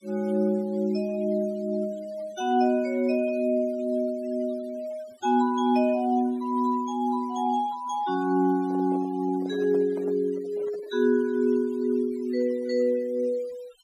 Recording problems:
noise reduction artefacts; signal-to-artefact ratio 25 dB
handling noise; from 8.5 to 11 s; peak -10 dB vs average level

